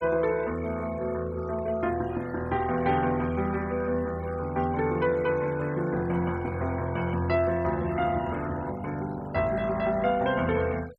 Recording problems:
noise reduction artefacts; signal-to-artefact ratio 20 dB

